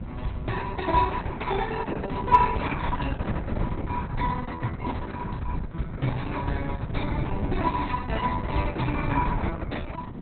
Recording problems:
lossy codec; Opus, log-spectral distance 4 dB, nothing above 4 kHz
wind on the microphone; below 210 Hz, SNR 4 dB

